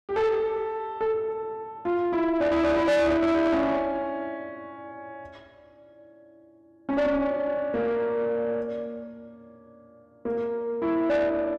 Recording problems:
distortion; soft clipping, signal-to-distortion ratio 6 dB

